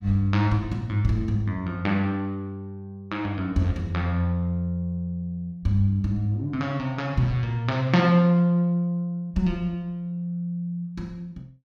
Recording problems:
none

